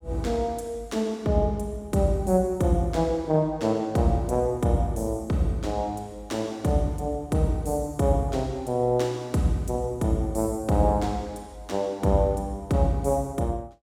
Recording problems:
none

